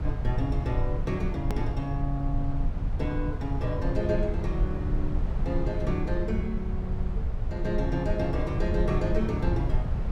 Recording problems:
low-frequency rumble; below 90 Hz, SNR 0 dB
hard cut with a click; at 1.5 s

